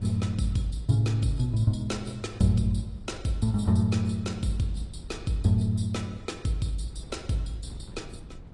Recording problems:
lossy compression; AAC, log-spectral distance 2 dB, nothing above 10.1 kHz
electrical hum; 60 Hz, harmonics up to 1.1 kHz, SNR 32 dB
wind on the microphone; below 130 Hz, SNR 19 dB

